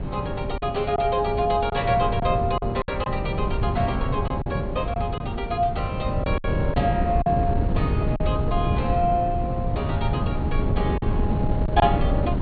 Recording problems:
treble cut off; nothing above 4.5 kHz
wind noise; below 180 Hz, SNR 1 dB
packet loss; 5% of the sound replaced, filled with silence

